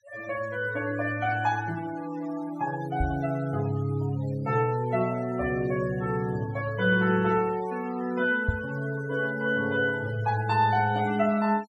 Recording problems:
noise reduction artefacts; signal-to-artefact ratio 18 dB
microphone thump; at 3 s and at 8.5 s; peak +5 dB vs average level

